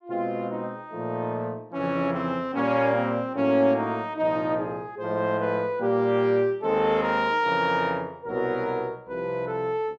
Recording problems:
none

